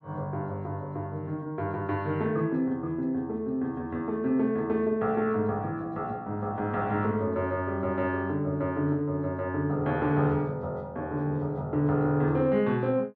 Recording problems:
none

